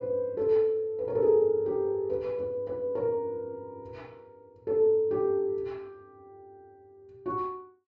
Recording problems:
low-pass filter; nothing above 8 kHz

